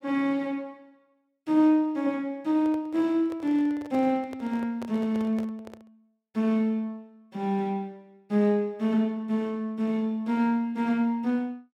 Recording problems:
microphone handling noise; from 2.5 to 6 s; peak -9 dB vs average level

